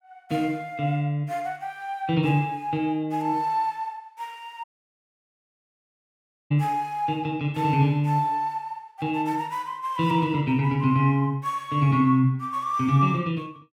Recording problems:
audio cutting out; at 4.5 s for 2 s

